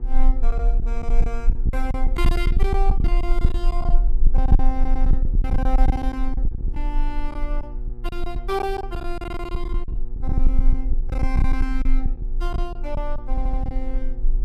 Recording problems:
hum; 60 Hz, harmonics up to 960 Hz, SNR 12 dB
low-frequency rumble; below 38 Hz, strongest tone 20 Hz, SNR -7 dB
lost packets; 13% of the sound replaced, filled with silence
stutter; at 5 s and at 13 s

